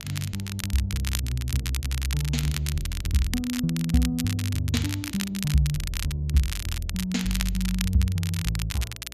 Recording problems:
hum; 60 Hz, harmonics up to 660 Hz, SNR 22 dB
crackle; vinyl, SNR 7 dB

